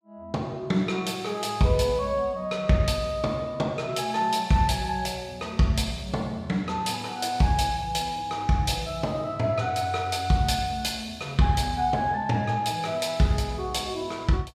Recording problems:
none

